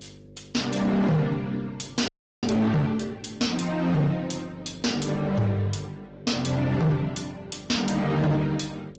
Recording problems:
codec artefacts; Speex, then Opus, log-spectral distance 6 dB
distortion; hard clipping, signal-to-distortion ratio 7 dB
hum; 50 Hz, harmonics up to 550 Hz, SNR 21 dB
audio freezing; at 2 s

